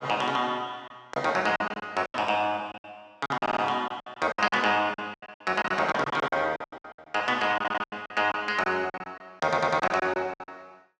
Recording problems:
lost packets; 17% of the sound replaced, filled with silence
stutter; at 3.5 s, at 7.5 s and at 9.5 s

